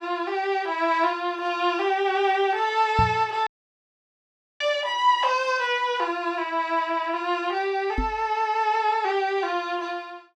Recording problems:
microphone bump; at 3 s and at 8 s; peak +2 dB vs average level
dropout; at 3.5 s for 1 s

